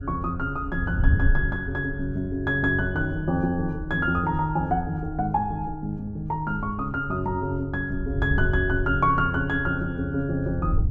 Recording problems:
wind on the microphone; below 82 Hz, SNR 7 dB

